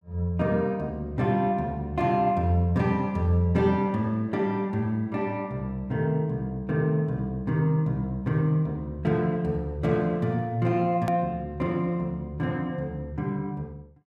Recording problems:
click at an edit; at 11 s

